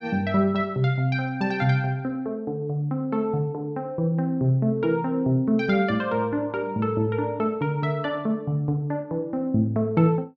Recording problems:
none

